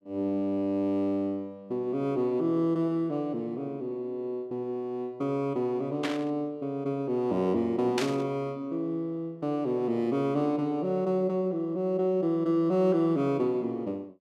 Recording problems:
burst of static; at 6 s and at 8 s; peak +1 dB vs average level

